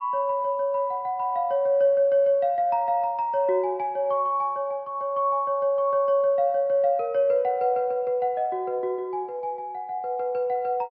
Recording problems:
treble cut off; nothing above 5.5 kHz

